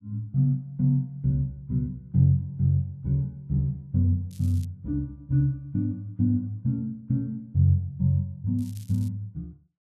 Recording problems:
crackling; at 4.5 s and at 8.5 s; loose cable, SNR 26 dB

